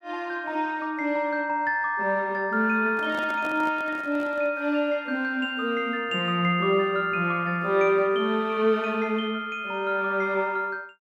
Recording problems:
handling noise; from 3 to 4.5 s; peak -8 dB vs average level

